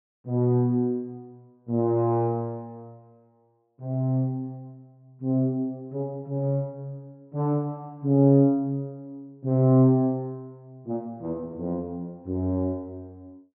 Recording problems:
treble cut off; nothing above 3.4 kHz

